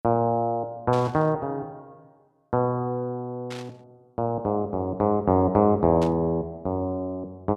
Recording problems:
burst of static; at 1 s, at 3.5 s and at 6 s; peak -10 dB vs average level

